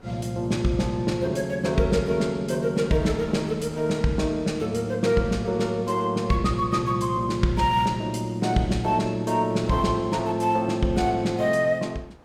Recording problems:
wind on the microphone; below 890 Hz, SNR 24 dB

